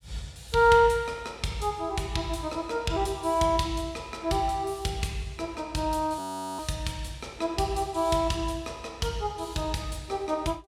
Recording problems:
audio freezing; at 6 s

